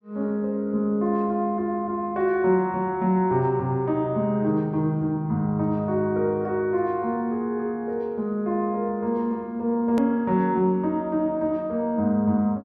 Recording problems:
click at an edit; at 10 s

